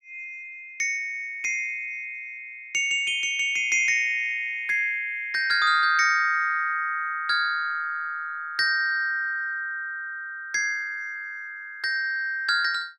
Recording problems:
none

